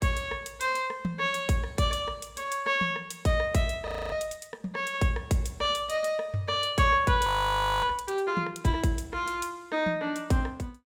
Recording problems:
frozen audio; at 4 s and at 7.5 s for 0.5 s

